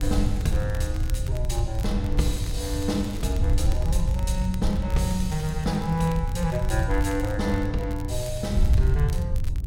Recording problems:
wind on the microphone; below 86 Hz, SNR -1 dB
crackle; vinyl, SNR 19 dB

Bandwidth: 16 kHz